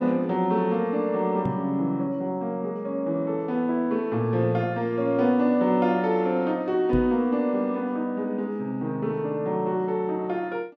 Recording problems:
microphone bump; at 1.5 s and at 7 s; peak 0 dB vs average level

